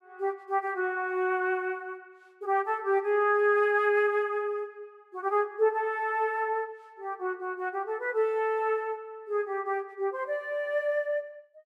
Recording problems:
none

